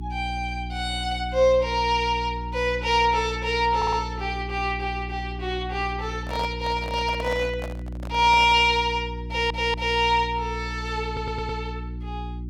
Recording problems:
electrical hum; 60 Hz, harmonics up to 360 Hz, SNR 10 dB
audio stuttering; at 4 s, at 9.5 s and at 11 s
microphone handling noise; from 6 to 8.5 s; peak -6 dB vs average level

